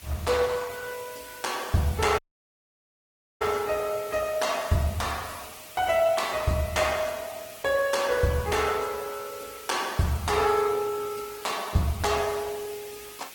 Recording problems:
lossy compression; Opus, log-spectral distance 7 dB, nothing above 15.5 kHz
hiss; SNR 17 dB
dropout; at 2 s for 1 s

